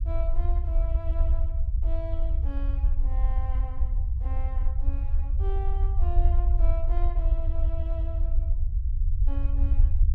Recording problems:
rumble; below 60 Hz, SNR -14 dB

